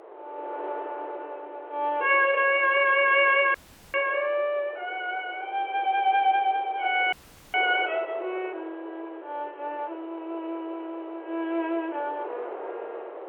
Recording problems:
telephone audio; 340 Hz to 3.3 kHz, G.711
wind noise; below 830 Hz, SNR 16 dB
audio cutting out; at 3.5 s and at 7 s

